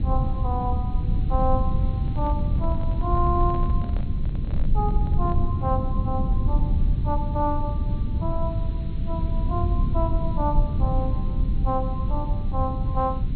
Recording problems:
treble missing; nothing above 4.2 kHz
background hiss; SNR 24 dB
low-frequency rumble; below 100 Hz, SNR -4 dB
microphone handling noise; from 2 to 5.5 s; peak -7 dB vs average level

